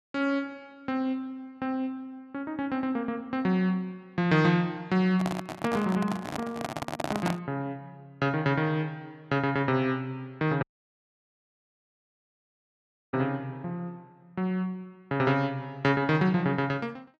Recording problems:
microphone handling noise; from 5 to 7.5 s; peak +3 dB vs average level
audio cutting out; at 11 s for 2.5 s

